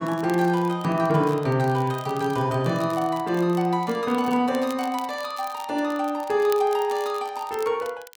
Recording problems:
crackle; vinyl, SNR 22 dB

